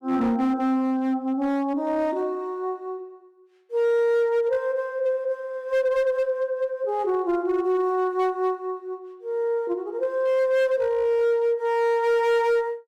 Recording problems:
distortion; hard clipping, signal-to-distortion ratio 12 dB

